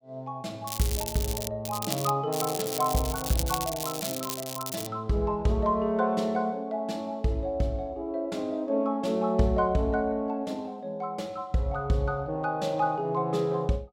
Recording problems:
crackle; at 0.5 s, at 1.5 s and from 2.5 to 5 s; loose cable, SNR 5 dB

